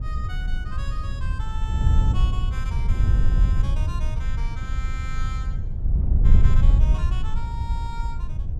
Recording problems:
wind on the microphone; below 74 Hz, SNR -14 dB

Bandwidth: 15 kHz